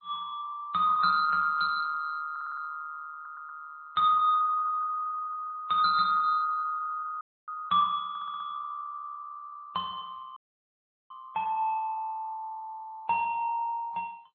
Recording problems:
lossy codec; MP3, then MP2, log-spectral distance 2 dB, nothing above 3.7 kHz
stutter; at 2.5 s, at 3 s and at 8 s
audio cutting out; at 7 s and at 10 s for 0.5 s

